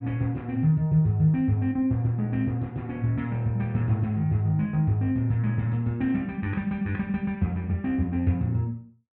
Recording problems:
none

